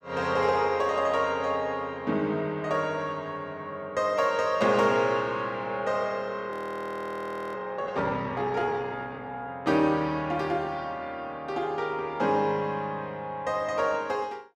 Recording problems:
frozen audio; at 6.5 s for 1 s

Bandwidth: 13.5 kHz